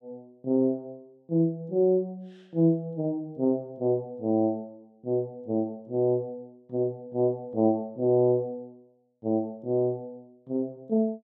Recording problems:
none

